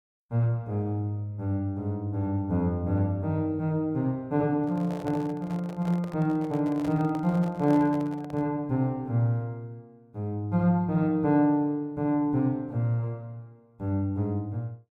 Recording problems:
microphone handling noise; from 4.5 to 8.5 s; peak -8 dB vs average level

